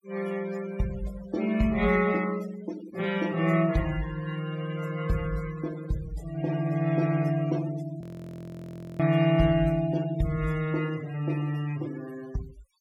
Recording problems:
noise reduction artefacts; signal-to-artefact ratio 18 dB
frozen audio; at 8 s for 1 s

